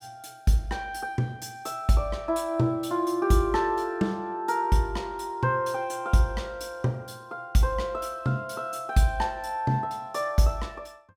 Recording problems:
none

